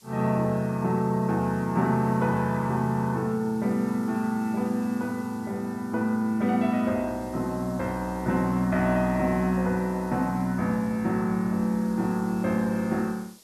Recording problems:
background hiss; SNR 25 dB

